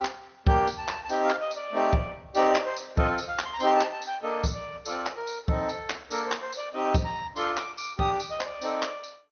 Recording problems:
lossy compression; MP2, then Opus, log-spectral distance 7 dB, nothing above 6.3 kHz

